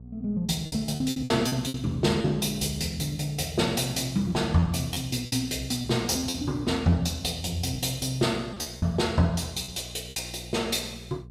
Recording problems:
electrical hum; 60 Hz, harmonics up to 480 Hz, SNR 17 dB
lost packets; 7% of the sound replaced, filled with repeated pitch periods

